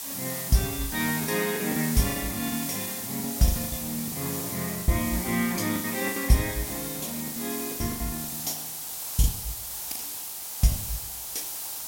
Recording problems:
background hiss; SNR 3 dB
packet loss; 14% of the sound replaced, filled with the last packet

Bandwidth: 16.5 kHz